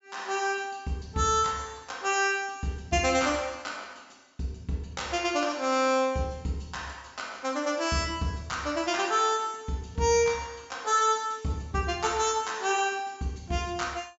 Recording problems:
low-pass filter; nothing above 8 kHz

